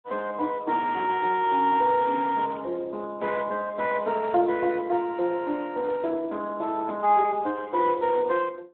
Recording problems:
phone line; 240 Hz to 3.7 kHz, Speex

